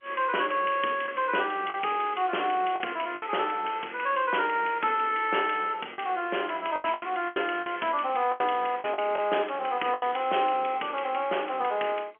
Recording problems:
telephone audio; 260 Hz to 3.3 kHz, G.711
lost packets; 6% of the sound replaced, filled with the last packet

